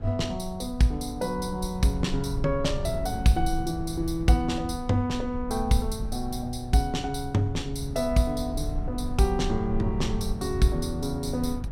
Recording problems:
rumble; below 88 Hz, SNR 8 dB

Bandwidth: 16.5 kHz